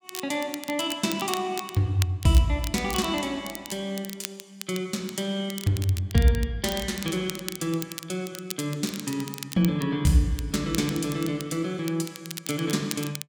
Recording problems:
crackling; vinyl, SNR 11 dB

